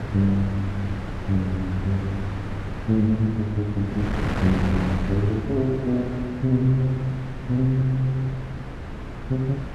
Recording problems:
wind noise; below 480 Hz, SNR 8 dB

